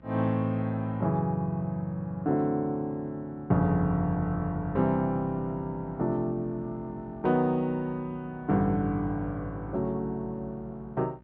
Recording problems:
electrical hum; 60 Hz, harmonics up to 1.8 kHz, SNR 24 dB

